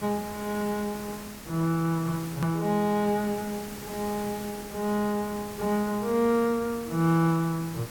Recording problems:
hiss; slope -3 dB per octave, SNR 13 dB
hard cut with a click; at 2.5 s

